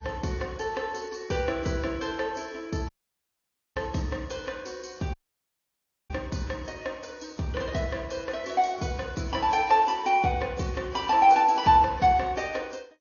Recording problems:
lossy codec; AAC, then MP2, log-spectral distance 4 dB, nothing above 6.7 kHz
audio cutting out; at 3 s for 1 s and at 5 s for 1 s

